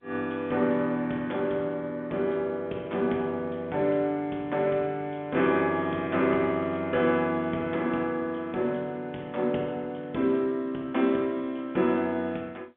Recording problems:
phone line; 170 Hz to 3.6 kHz, G.711

